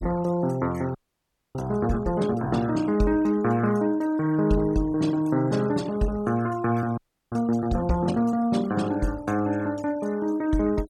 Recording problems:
denoising artefacts; signal-to-artefact ratio 20 dB
frozen audio; at 1 s for 0.5 s and at 7 s

